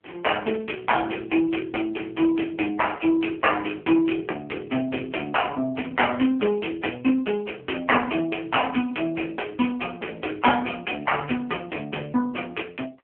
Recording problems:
telephone audio; 240 Hz to 3.2 kHz, AMR-NB

